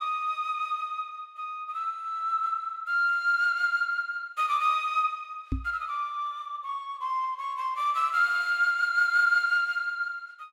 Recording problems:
microphone bump; at 5.5 s; peak 0 dB vs average level

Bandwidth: 16 kHz